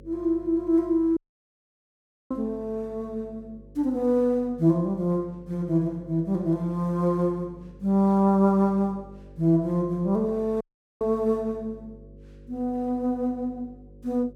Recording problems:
hum; 50 Hz, harmonics up to 550 Hz, SNR 23 dB
dropout; at 1 s for 1 s and at 11 s

